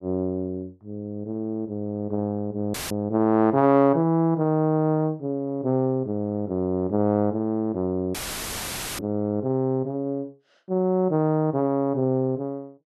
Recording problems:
dropout; at 2.5 s and at 8 s for 1 s; filled with static

